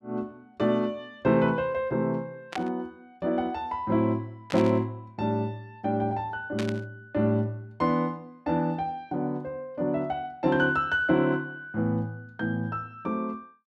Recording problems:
burst of static; at 2.5 s, at 4.5 s and at 6.5 s; peak -3 dB vs average level

